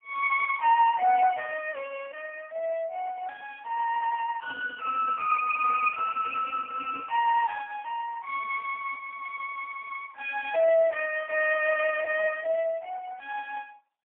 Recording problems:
telephone audio; 500 Hz to 2.6 kHz, AMR-NB, then MP3

